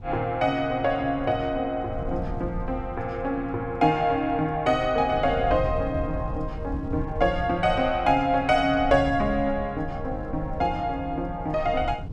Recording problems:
wind on the microphone; below 120 Hz, SNR 11 dB

